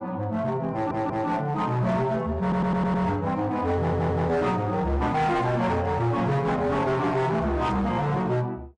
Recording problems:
codec artefacts; AAC, then MP3, log-spectral distance 2 dB, nothing above 8.7 kHz
distortion; hard clipping, signal-to-distortion ratio 11 dB
stutter; at 0.5 s, at 2.5 s and at 4 s

